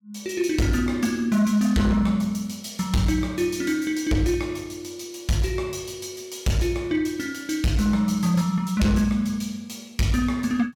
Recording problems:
distortion; hard clipping, signal-to-distortion ratio 11 dB

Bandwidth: 17 kHz